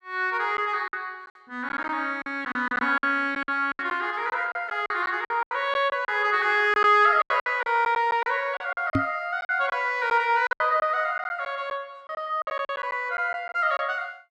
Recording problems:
packet loss; 12% of the sound replaced, filled with silence
knock on the microphone; at 9 s; peak +4 dB vs average level

